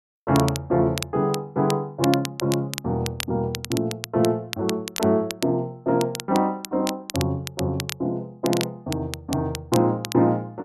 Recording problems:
crackling; vinyl, SNR 10 dB

